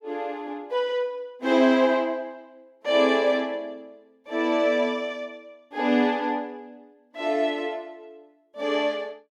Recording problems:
none

